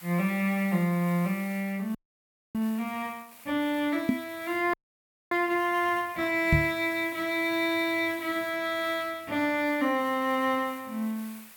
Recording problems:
hiss; SNR 19 dB
frozen audio; at 2 s for 0.5 s and at 4.5 s for 0.5 s
microphone thump; at 4 s and at 6.5 s; peak +7 dB vs average level

